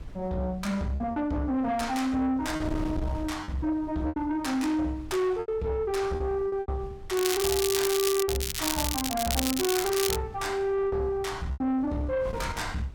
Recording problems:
distorted audio; soft clipping, signal-to-distortion ratio 10 dB
wind noise; below 220 Hz, SNR 14 dB
lost packets; 5% of the sound replaced, filled with repeated pitch periods
crackle; from 7 to 10 s; loose cable, SNR 1 dB

